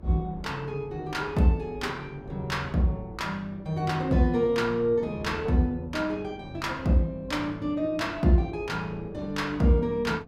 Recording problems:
hum; 50 Hz, harmonics up to 350 Hz, SNR 23 dB
wind noise; below 410 Hz, SNR 22 dB

